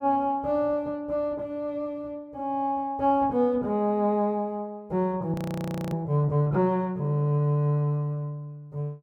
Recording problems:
audio freezing; at 5.5 s for 0.5 s

